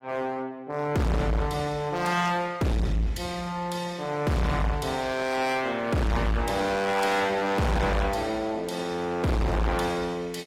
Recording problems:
lossy compression; AAC, log-spectral distance 3 dB, nothing above 15.5 kHz
distorted audio; hard clipping, uneven, signal-to-distortion ratio 6 dB

